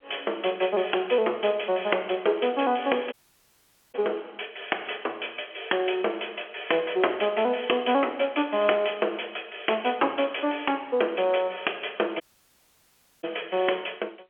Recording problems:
telephone audio; 320 Hz to 3.3 kHz, G.711
dropout; at 3 s for 1 s and at 12 s for 1 s

